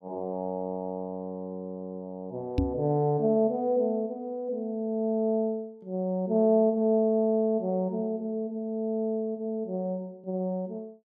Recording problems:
microphone thump; at 2.5 s; peak +6 dB vs average level

